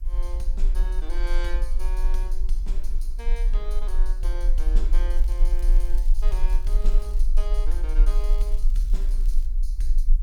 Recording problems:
hiss; SNR 27 dB
low-frequency rumble; below 36 Hz, strongest tone 20 Hz, SNR -13 dB
crackle; from 5 to 7.5 s and from 8 to 9.5 s; loose cable, SNR 17 dB

